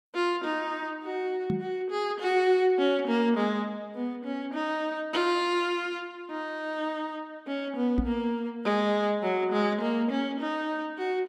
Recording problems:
microphone thump; at 1.5 s and at 8 s; peak +3 dB vs average level

